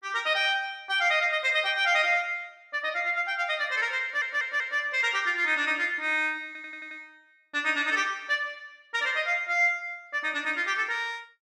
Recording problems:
audio stuttering; at 4 s and at 6.5 s

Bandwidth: 14.5 kHz